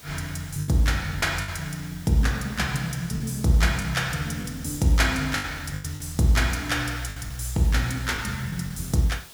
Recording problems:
hiss; slope -1 dB per octave, SNR 19 dB
packet loss; 6% of the sound replaced, filled with the last packet

